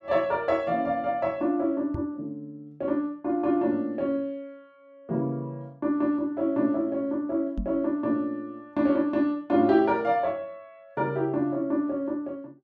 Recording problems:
knock on the microphone; at 2 s and at 7.5 s; peak -1 dB vs average level

